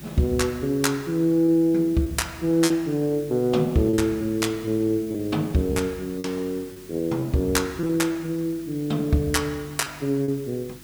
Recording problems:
hum; 50 Hz, harmonics up to 350 Hz, SNR 24 dB
hiss; SNR 22 dB
packet loss; 5% of the sound replaced, filled with repeated pitch periods

